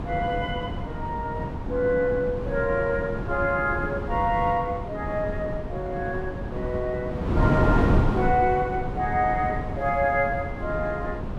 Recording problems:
wind on the microphone; below 320 Hz, SNR 3 dB

